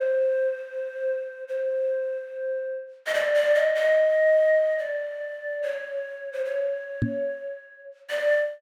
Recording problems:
microphone thump; at 7 s; peak +4 dB vs average level

